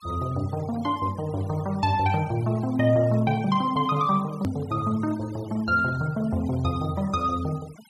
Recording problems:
denoising artefacts; signal-to-artefact ratio 23 dB
edit click; at 4.5 s

